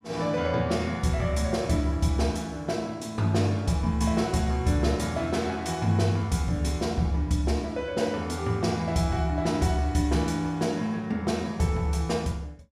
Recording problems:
none

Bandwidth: 14.5 kHz